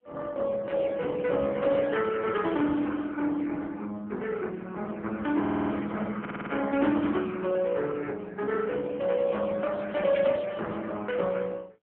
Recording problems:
phone line; 150 Hz to 3.3 kHz, AMR-NB
audio stuttering; at 5.5 s and at 6 s

